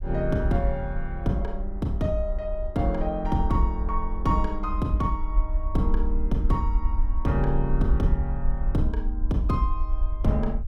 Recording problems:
rumble; below 46 Hz, SNR 2 dB

